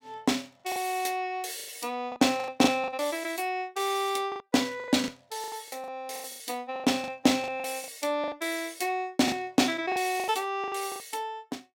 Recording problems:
packet loss; 14% of the sound replaced, filled with the last packet

